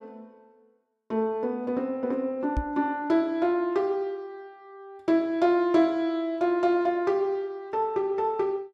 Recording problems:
microphone thump; at 2.5 s; peak 0 dB vs average level

